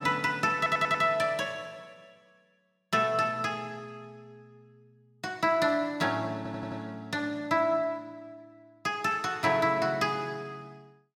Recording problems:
stutter; at 0.5 s and at 6.5 s

